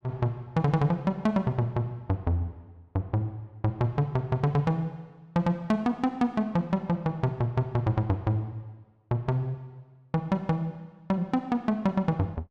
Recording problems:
none

